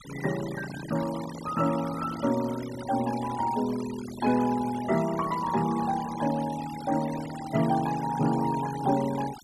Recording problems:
noise reduction artefacts; signal-to-artefact ratio 14 dB

